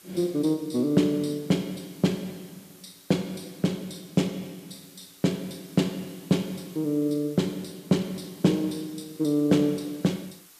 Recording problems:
background hiss; slope 0 dB per octave, SNR 23 dB

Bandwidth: 14.5 kHz